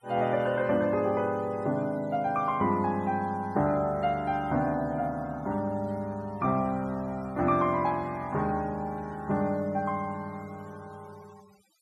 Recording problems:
denoising artefacts; signal-to-artefact ratio 26 dB

